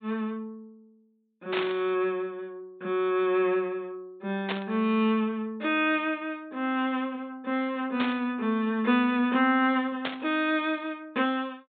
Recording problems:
treble missing; nothing above 4 kHz
burst of static; 4 times, first at 1.5 s; peak 0 dB vs average level

